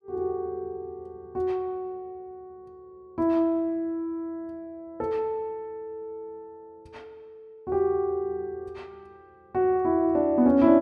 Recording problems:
none

